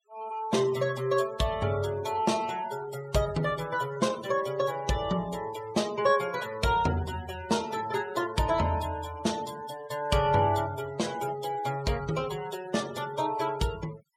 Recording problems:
denoising artefacts; signal-to-artefact ratio 16 dB

